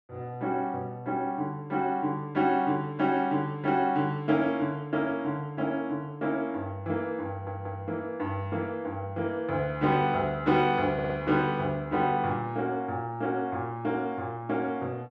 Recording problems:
stutter; at 7.5 s and at 11 s

